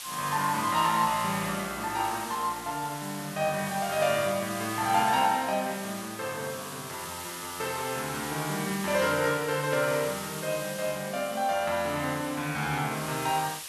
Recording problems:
hiss; slope +3 dB per octave, SNR 10 dB

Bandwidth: 12.5 kHz